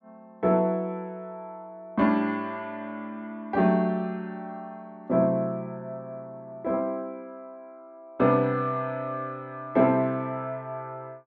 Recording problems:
none

